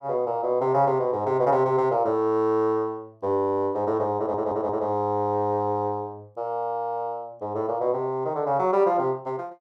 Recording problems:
stutter; at 4 s

